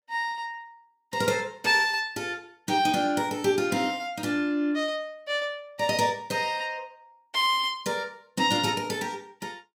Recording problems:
none

